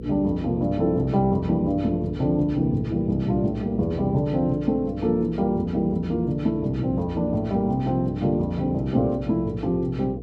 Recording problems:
electrical hum; 60 Hz, harmonics up to 480 Hz, SNR 12 dB

